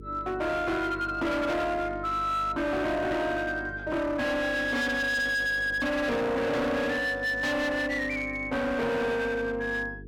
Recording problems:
distortion; hard clipping, signal-to-distortion ratio 7 dB
electrical hum; 50 Hz, harmonics up to 450 Hz, SNR 17 dB

